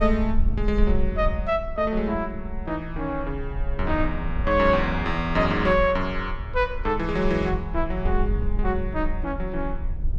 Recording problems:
rumble; below 56 Hz, SNR 6 dB

